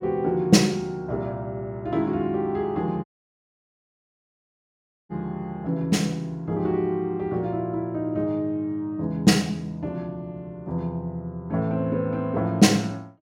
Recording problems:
dropout; at 3 s for 2 s

